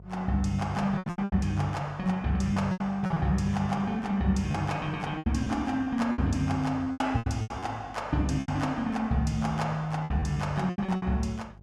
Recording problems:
hum; 50 Hz, harmonics up to 600 Hz, SNR 22 dB
packet loss; 11% of the sound replaced, filled with repeated pitch periods

